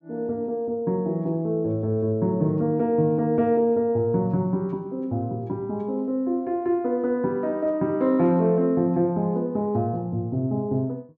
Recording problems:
none

